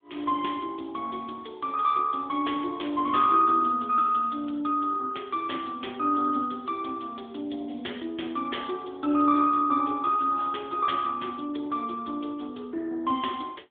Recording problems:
phone line; 220 Hz to 3.5 kHz, AMR-NB

